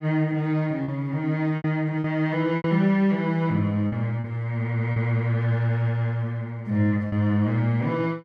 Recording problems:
packet loss; 5% of the sound replaced, filled with repeated pitch periods

